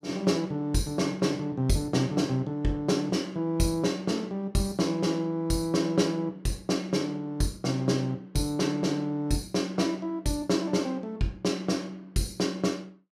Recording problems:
none

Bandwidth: 15.5 kHz